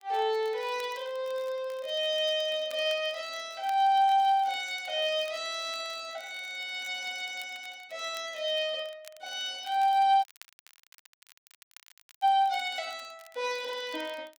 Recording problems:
crackling; vinyl, SNR 25 dB
dropout; at 10 s for 2 s

